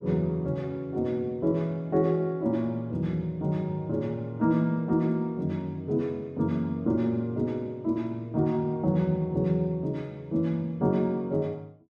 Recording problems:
none

